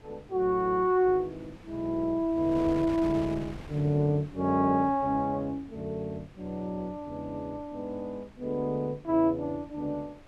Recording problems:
wind on the microphone; below 700 Hz, SNR 18 dB

